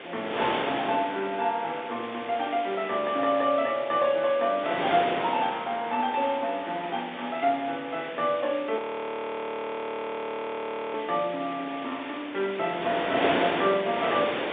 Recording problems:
telephone audio; 240 Hz to 4 kHz, G.711
background hiss; SNR 14 dB
wind on the microphone; below 2.2 kHz, SNR 6 dB
frozen audio; at 9 s for 2 s

